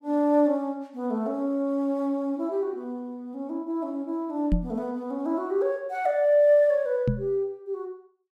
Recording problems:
microphone bump; at 4.5 s and at 7 s; peak +5 dB vs average level

